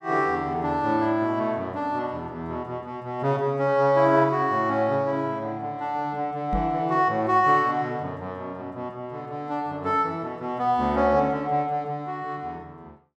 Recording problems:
knock on the microphone; at 6.5 s; peak -1 dB vs average level

